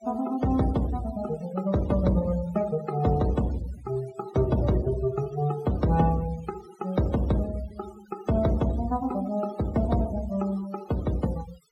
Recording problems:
noise reduction artefacts; signal-to-artefact ratio 18 dB

